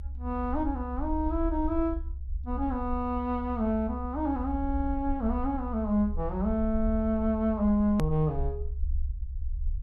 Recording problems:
rumble; below 68 Hz, SNR 7 dB
click at an edit; at 8 s

